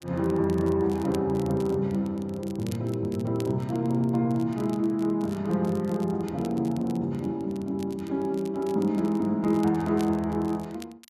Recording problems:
crackle; vinyl, SNR 24 dB

